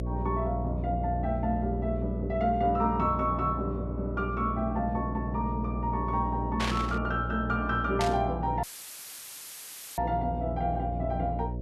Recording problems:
electrical hum; 60 Hz, harmonics up to 660 Hz, SNR 4 dB
static burst; at 6.5 s and at 8 s; peak +2 dB vs average level
audio cutting out; at 8.5 s for 1.5 s; filled with static

